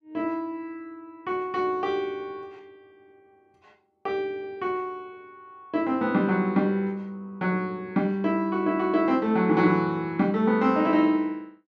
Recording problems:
none

